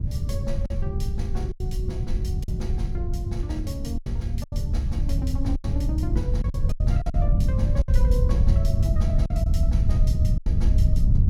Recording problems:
wind on the microphone; below 90 Hz, SNR -10 dB
packet loss; 7% of the sound replaced, filled with silence

